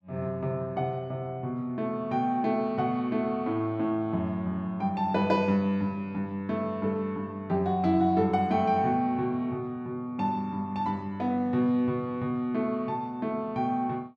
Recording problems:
none

